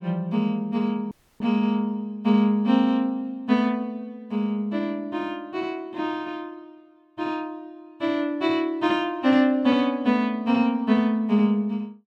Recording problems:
dropout; at 1 s

